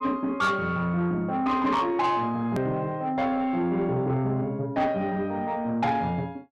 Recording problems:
distortion; soft clipping, signal-to-distortion ratio 11 dB
click at an edit; at 2.5 s

